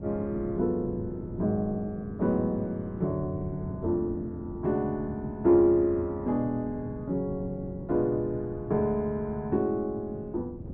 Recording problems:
wind on the microphone; below 270 Hz, SNR 12 dB

